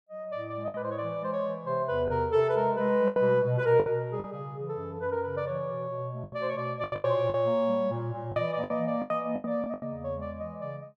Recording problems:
packet loss; 8% of the sound replaced, filled with the last packet

